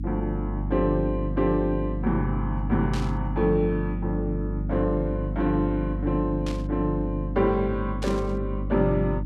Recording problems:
hum; 50 Hz, harmonics up to 300 Hz, SNR 4 dB
static burst; at 3 s, at 6.5 s and at 8 s; peak -7 dB vs average level

